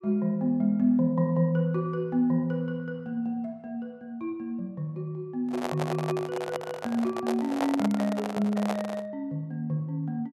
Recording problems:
handling noise; from 5.5 to 9 s; peak +2 dB vs average level

